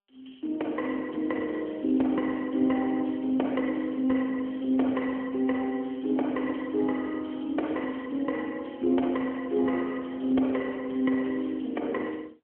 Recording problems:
telephone audio; 220 Hz to 3.3 kHz, AMR-NB

